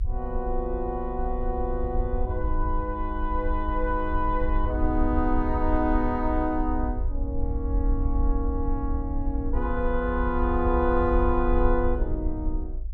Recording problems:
rumble; below 58 Hz, strongest tone 26 Hz, SNR 2 dB

